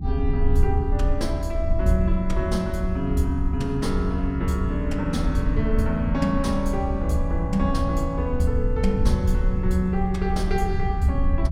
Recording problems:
rumble; below 76 Hz, SNR 1 dB

